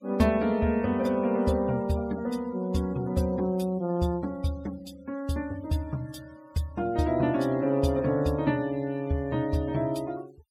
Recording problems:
noise reduction artefacts; signal-to-artefact ratio 23 dB

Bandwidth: 16.5 kHz